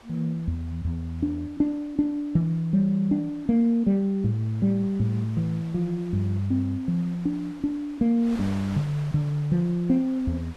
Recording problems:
wind noise; below 2.3 kHz, SNR 23 dB

